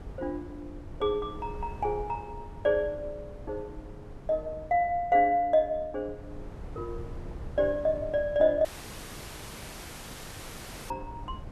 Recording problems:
wind on the microphone; below 180 Hz, SNR 16 dB
audio cutting out; at 8.5 s for 2.5 s

